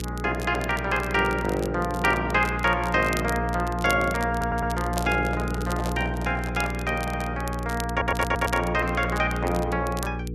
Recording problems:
hum; 60 Hz, harmonics up to 480 Hz, SNR 6 dB
crackle; vinyl, SNR 16 dB
stutter; at 4.5 s, at 7 s and at 8 s
microphone handling noise; from 5 to 7 s; peak -3 dB vs average level

